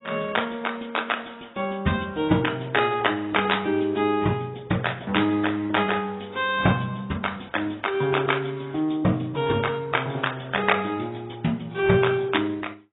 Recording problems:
lossy compression; AAC, log-spectral distance 7 dB, nothing above 3.8 kHz

